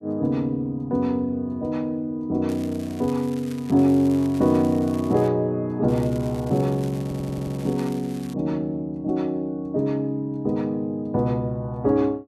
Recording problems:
crackling; from 2.5 to 5.5 s and from 6 to 8.5 s; loose cable, SNR 22 dB
audio stuttering; at 7 s

